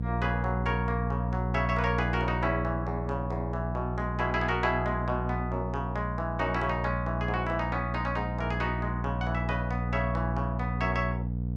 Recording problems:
hum; 60 Hz, harmonics up to 480 Hz, SNR 1 dB

